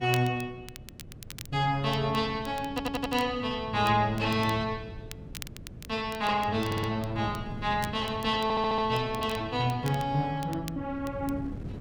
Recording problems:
wind noise; below 210 Hz, SNR 14 dB
crackling; vinyl, SNR 18 dB
audio stuttering; at 2.5 s, at 6.5 s and at 8.5 s

